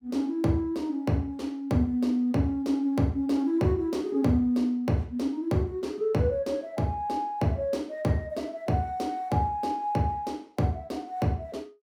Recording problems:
none

